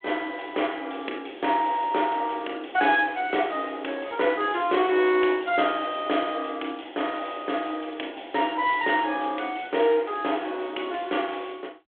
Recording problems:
telephone audio; 240 Hz to 3.4 kHz, G.726

